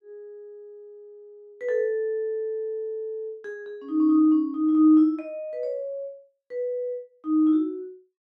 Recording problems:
none

